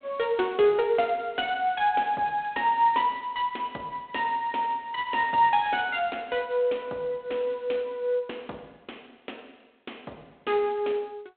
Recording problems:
phone line; 300 Hz to 3.7 kHz, G.726

